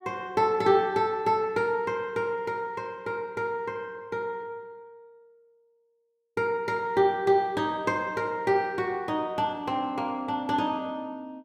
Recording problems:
none

